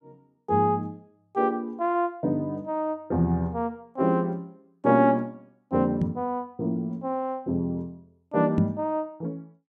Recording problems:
microphone bump; at 6 s and at 8.5 s; peak +7 dB vs average level

